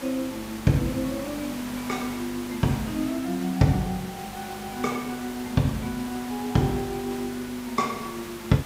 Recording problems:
mains hum; 50 Hz, harmonics up to 850 Hz, SNR 21 dB
hiss; slope -3 dB per octave, SNR 11 dB

